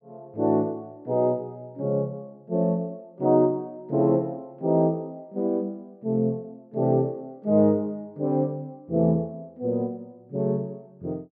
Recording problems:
none

